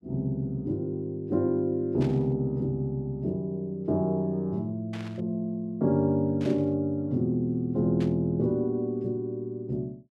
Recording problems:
burst of static; 4 times, first at 2 s; peak -11 dB vs average level

